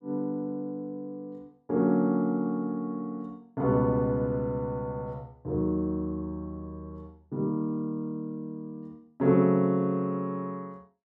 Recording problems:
none

